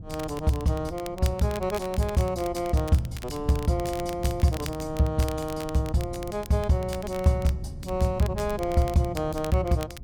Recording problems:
wind on the microphone; below 140 Hz, SNR 15 dB
crackle; vinyl, SNR 17 dB

